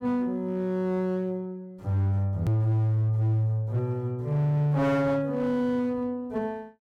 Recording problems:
distorted audio; hard clipping, signal-to-distortion ratio 11 dB
edit click; at 2.5 s

